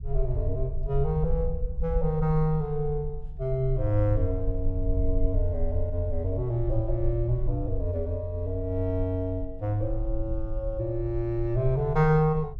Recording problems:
low-frequency rumble; below 52 Hz, SNR 6 dB

